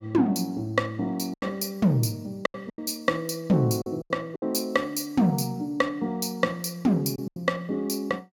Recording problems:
packet loss; 6% of the sound replaced, filled with silence

